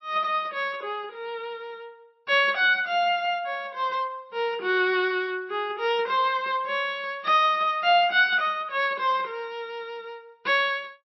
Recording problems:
lossy compression; MP3, log-spectral distance 2 dB, nothing above 5.7 kHz

